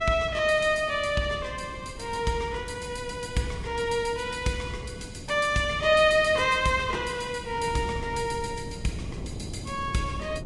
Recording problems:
lossy compression; Vorbis, log-spectral distance 4 dB, nothing above 10.7 kHz
wind noise; below 270 Hz, SNR 14 dB

